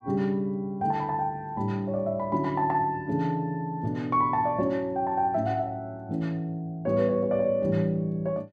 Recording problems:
none

